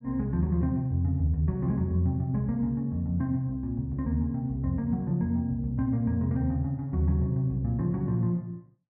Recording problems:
none

